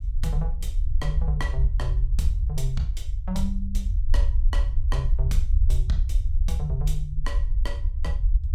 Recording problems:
rumble; below 58 Hz, SNR -7 dB

